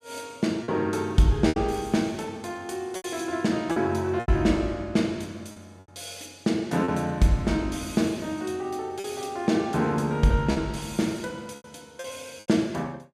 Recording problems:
lost packets; 5% of the sound replaced, filled with repeated pitch periods

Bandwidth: 15 kHz